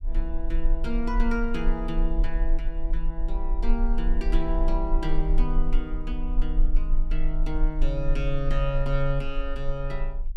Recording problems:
rumble; below 34 Hz, strongest tone 20 Hz, SNR -3 dB

